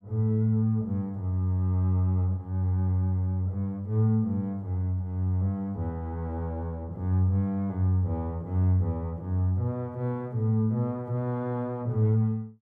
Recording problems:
none

